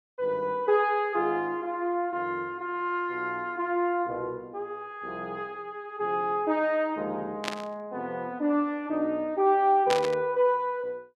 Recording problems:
static burst; at 7.5 s and at 10 s; peak +2 dB vs average level

